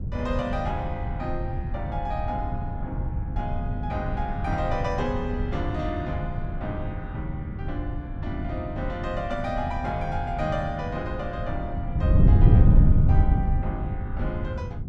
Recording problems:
wind on the microphone; below 130 Hz, SNR -5 dB

